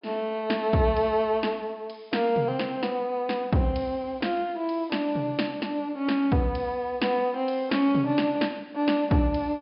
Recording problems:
low-pass filter; nothing above 5.5 kHz

